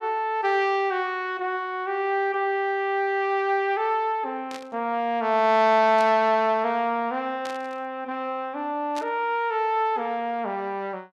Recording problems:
static burst; 4 times, first at 4.5 s; peak -9 dB vs average level

